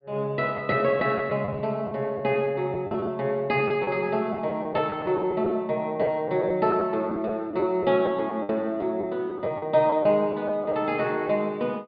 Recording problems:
treble cut off; nothing above 5 kHz
lost packets; 7% of the sound replaced, filled with the last packet

